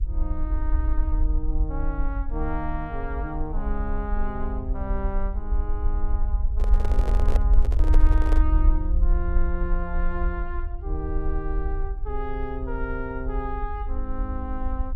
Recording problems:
hum; 50 Hz, harmonics up to 500 Hz, SNR 23 dB
low-frequency rumble; below 52 Hz, SNR -6 dB
handling noise; from 6.5 to 8.5 s; peak +4 dB vs average level

